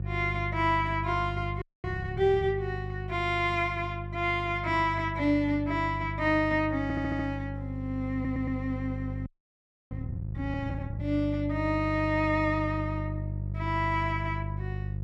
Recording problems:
hum; 50 Hz, harmonics up to 400 Hz, SNR 6 dB
frozen audio; at 1.5 s and at 9.5 s for 0.5 s
stutter; at 7 s and at 8 s

